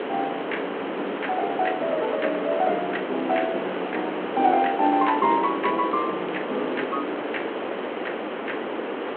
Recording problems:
telephone audio; 220 Hz to 3.4 kHz, G.726
background hiss; SNR 4 dB
crackle; at 1 s and from 3.5 to 7 s; loose cable, SNR 27 dB

